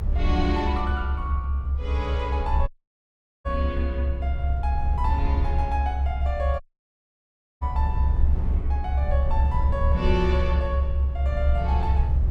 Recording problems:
rumble; below 70 Hz, strongest tone 66 Hz, SNR -5 dB
audio cutting out; at 2.5 s for 1 s and at 6.5 s for 1 s

